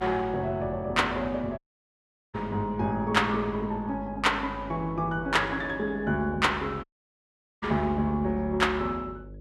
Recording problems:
electrical hum; 50 Hz, harmonics up to 600 Hz, SNR 18 dB
dropout; at 1.5 s for 1 s and at 7 s for 1 s

